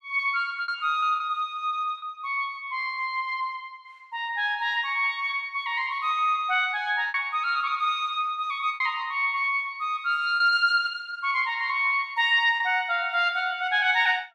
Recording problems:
lost packets; 3% of the sound replaced, filled with repeated pitch periods

